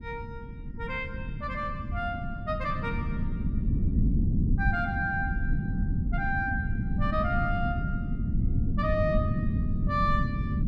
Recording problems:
low-frequency rumble; below 180 Hz, SNR -2 dB

